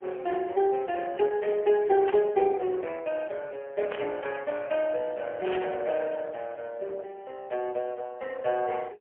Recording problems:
telephone audio; 320 Hz to 3.1 kHz, AMR-NB, then MP3
burst of static; at 2 s, at 4 s and at 5.5 s; peak -4 dB vs average level

